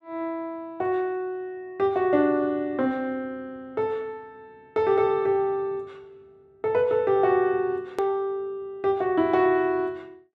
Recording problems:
click at an edit; at 8 s

